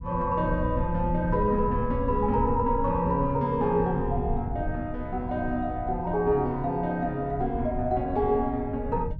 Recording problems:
low-frequency rumble; below 110 Hz, SNR 8 dB

